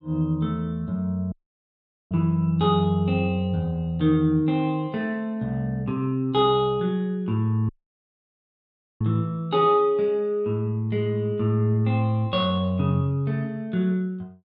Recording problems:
dropout; at 1.5 s for 1 s and at 7.5 s for 1.5 s

